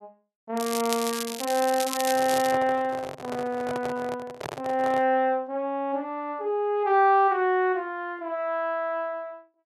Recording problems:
crackle; from 0.5 to 2.5 s; loose cable, SNR 7 dB
microphone handling noise; from 2 to 5 s; peak -5 dB vs average level

